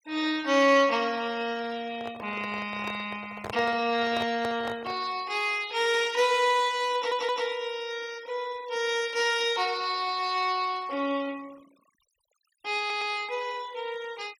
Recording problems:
noise reduction artefacts; signal-to-artefact ratio 22 dB
microphone handling noise; from 2 to 5 s; peak -5 dB vs average level
audio stuttering; at 7 s and at 13 s

